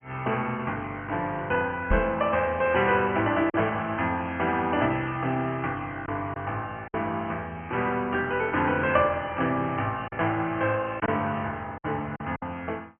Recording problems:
treble missing; nothing above 3 kHz
lossy compression; MP2, log-spectral distance 2 dB
lost packets; 3% of the sound replaced, filled with silence
microphone thump; at 2 s; peak +4 dB vs average level

